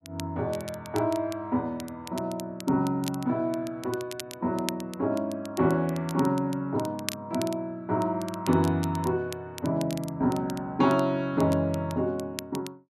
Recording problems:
crackling; vinyl, SNR 15 dB

